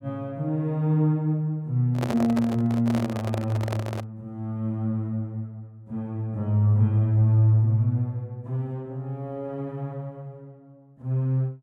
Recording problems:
handling noise; from 2 to 4 s; peak -2 dB vs average level

